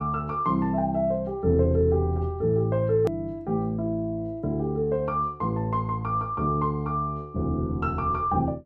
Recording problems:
hard cut with a click; at 3 s

